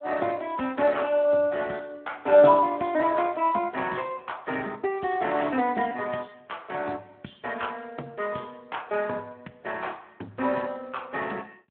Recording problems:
phone line; 220 Hz to 3.3 kHz, Speex

